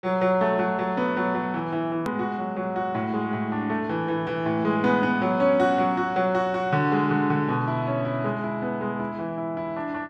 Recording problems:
hard cut with a click; at 2 s

